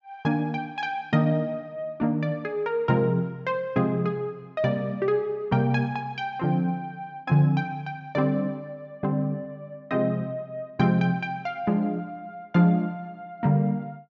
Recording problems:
treble cut off; nothing above 8 kHz

